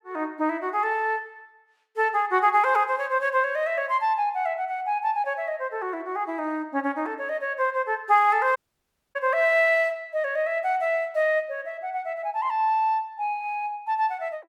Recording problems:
dropout; at 8.5 s for 0.5 s

